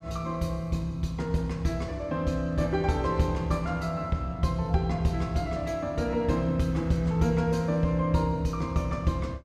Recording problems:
none

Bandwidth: 14.5 kHz